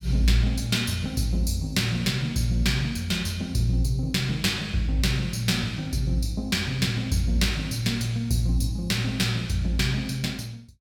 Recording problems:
none

